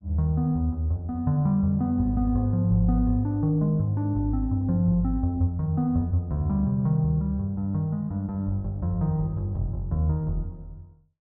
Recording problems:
none

